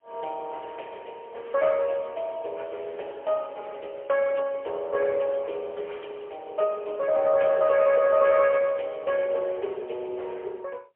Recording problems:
telephone audio; 340 Hz to 3.1 kHz, AMR-NB, then MP3

